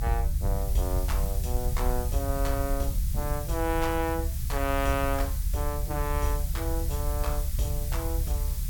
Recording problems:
background hiss; slope +4 dB per octave, SNR 7 dB
rumble; below 72 Hz, SNR -1 dB

